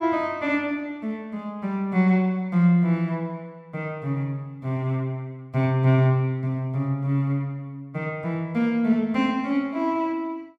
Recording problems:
none

